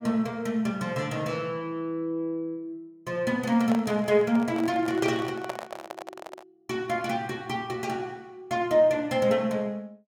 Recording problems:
handling noise; from 3.5 to 6.5 s; peak -1 dB vs average level

